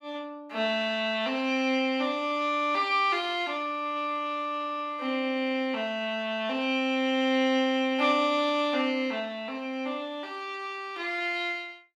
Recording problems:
none

